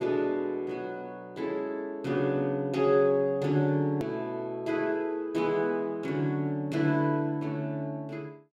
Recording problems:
edit click; at 4 s

